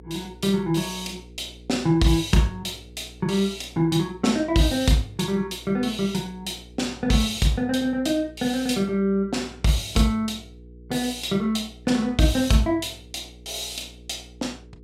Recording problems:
electrical hum; 60 Hz, harmonics up to 480 Hz, SNR 22 dB

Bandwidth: 16 kHz